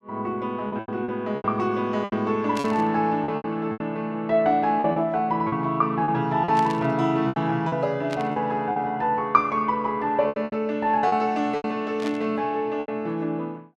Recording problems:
lost packets; 10% of the sound replaced, filled with repeated pitch periods
burst of static; 4 times, first at 2.5 s; peak -7 dB vs average level

